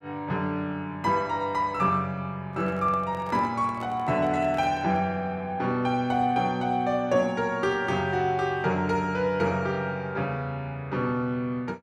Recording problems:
microphone handling noise; from 2.5 to 5 s; peak -12 dB vs average level

